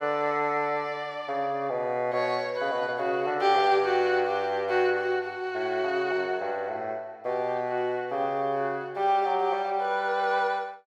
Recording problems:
none

